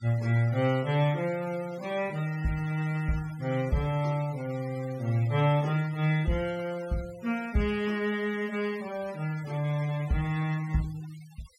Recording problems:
denoising artefacts; signal-to-artefact ratio 19 dB

